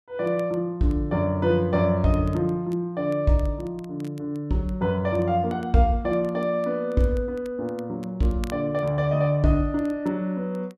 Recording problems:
crackling; vinyl, SNR 29 dB

